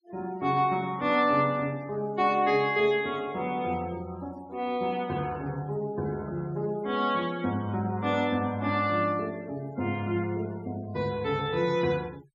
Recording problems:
denoising artefacts; signal-to-artefact ratio 25 dB

